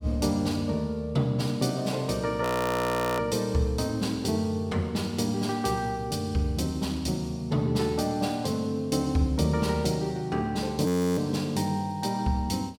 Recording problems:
audio freezing; at 2.5 s for 1 s and at 11 s

